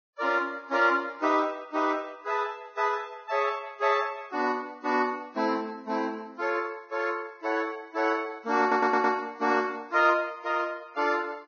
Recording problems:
lossy codec; Vorbis, log-spectral distance 3 dB, nothing above 6.3 kHz
stutter; at 8.5 s

